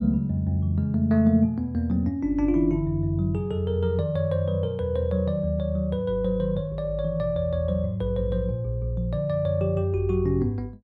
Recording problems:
none

